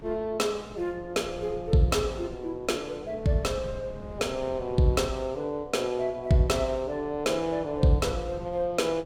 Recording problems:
hum; 60 Hz, harmonics up to 600 Hz, SNR 27 dB
wind noise; below 190 Hz, SNR 19 dB

